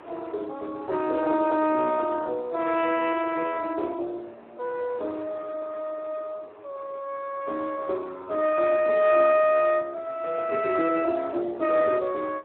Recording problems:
phone line; 280 Hz to 3.1 kHz, Speex
wind on the microphone; below 1.1 kHz, SNR 23 dB

